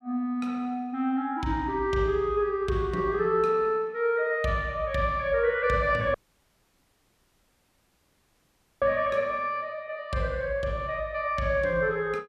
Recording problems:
dropout; at 6 s for 2.5 s

